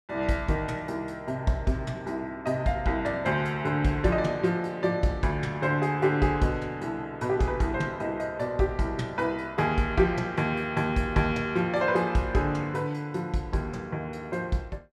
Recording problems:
none

